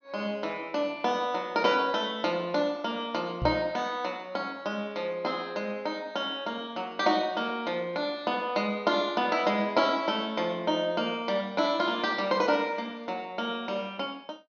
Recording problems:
low-pass filter; nothing above 6.5 kHz
microphone thump; at 3.5 s; peak 0 dB vs average level

